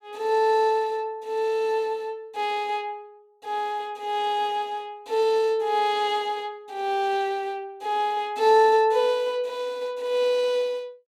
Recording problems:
none

